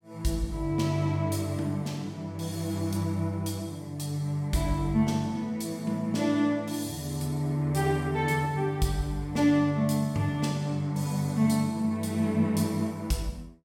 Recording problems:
none

